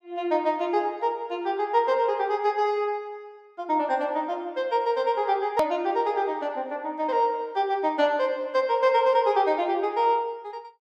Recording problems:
hard cut with a click; at 5.5 s

